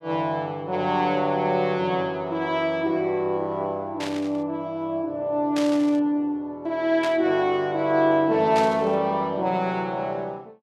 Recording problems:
static burst; 4 times, first at 4 s; peak -5 dB vs average level

